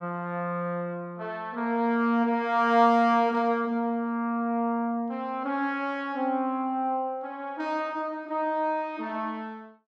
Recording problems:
none

